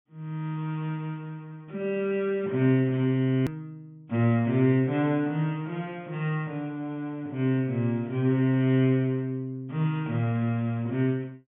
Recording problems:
low-pass filter; nothing above 3.4 kHz
hard cut with a click; at 3.5 s

